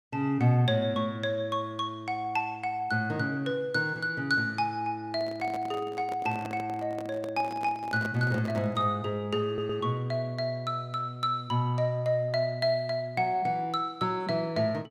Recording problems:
handling noise; from 5 to 9 s; peak -5 dB vs average level
audio stuttering; at 9.5 s

